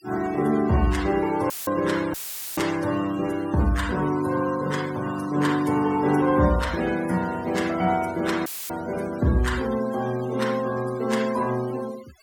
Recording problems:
noise reduction artefacts; signal-to-artefact ratio 16 dB
dropout; at 1.5 s, at 2 s and at 8.5 s; filled with static

